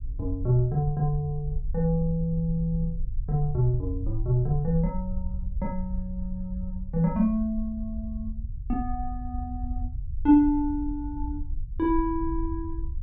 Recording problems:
rumble; below 62 Hz, SNR 8 dB

